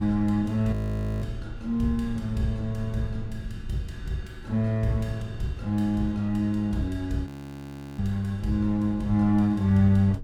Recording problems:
rumble; below 100 Hz, SNR 16 dB
wind noise; below 150 Hz, SNR 19 dB
frozen audio; at 0.5 s and at 7.5 s for 0.5 s

